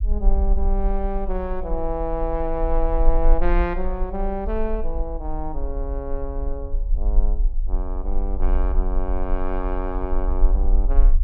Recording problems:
low-frequency rumble; below 40 Hz, strongest tone 24 Hz, SNR -3 dB

